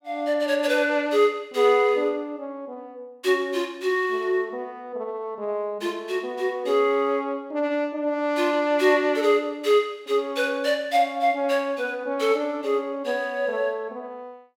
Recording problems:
none

